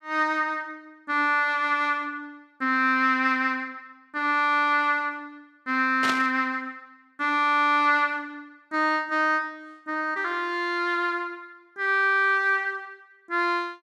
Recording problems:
burst of static; at 6 s; peak 0 dB vs average level

